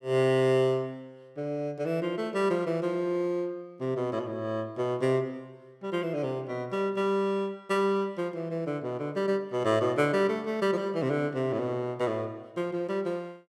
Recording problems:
none

